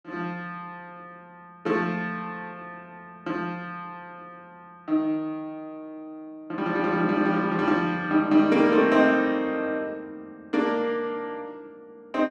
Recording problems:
none

